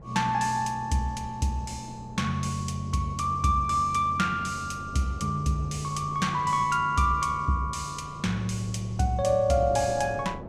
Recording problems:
wind on the microphone; below 470 Hz, SNR 18 dB

